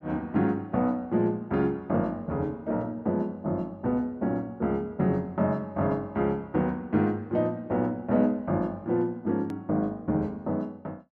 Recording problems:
click at an edit; at 9.5 s

